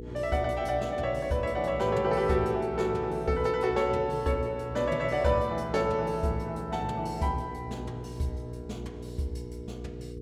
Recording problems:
mains hum; 60 Hz, harmonics up to 480 Hz, SNR 12 dB

